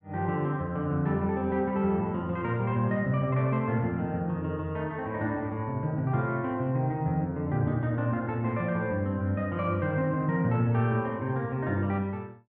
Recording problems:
none

